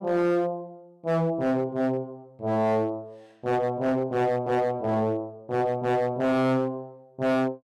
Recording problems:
distortion; hard clipping, signal-to-distortion ratio 8 dB

